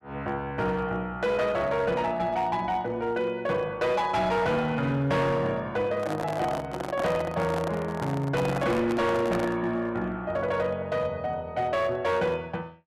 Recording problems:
distorted audio; hard clipping, signal-to-distortion ratio 12 dB
handling noise; from 6 to 9.5 s; peak 0 dB vs average level

